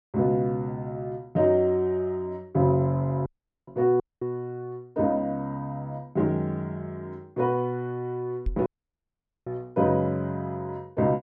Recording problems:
audio cutting out; at 3.5 s, at 4 s and at 8.5 s for 1 s
microphone thump; at 8.5 s; peak +1 dB vs average level

